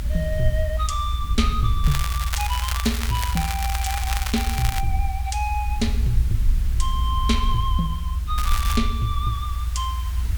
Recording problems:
background hiss; SNR 15 dB
rumble; below 70 Hz, SNR -2 dB
crackle; from 2 to 5 s and at 8.5 s; loose cable, SNR 3 dB

